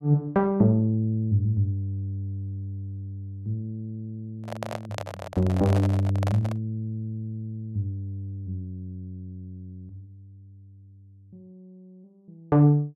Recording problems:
microphone handling noise; from 4.5 to 6.5 s; peak -2 dB vs average level

